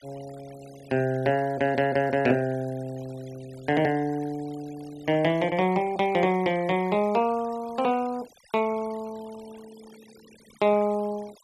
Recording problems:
denoising artefacts; signal-to-artefact ratio 23 dB

